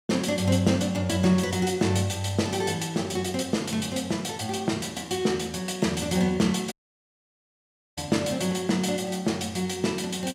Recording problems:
audio cutting out; at 6.5 s for 1.5 s

